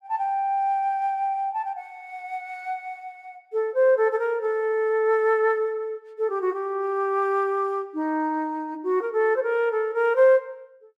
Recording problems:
none

